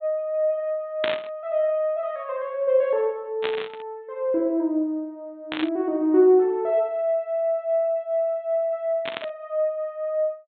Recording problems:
treble missing; nothing above 4 kHz
burst of static; 4 times, first at 1 s; peak +1 dB vs average level

